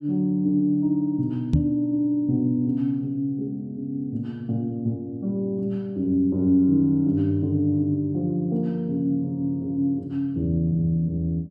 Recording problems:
knock on the microphone; at 1.5 s; peak +7 dB vs average level

